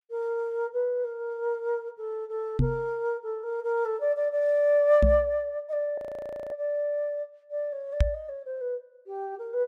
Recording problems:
microphone bump; at 2.5 s, at 5 s and at 8 s; peak +8 dB vs average level
frozen audio; at 6 s for 0.5 s

